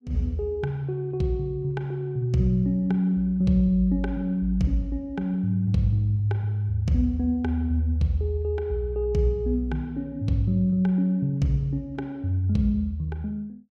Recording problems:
none

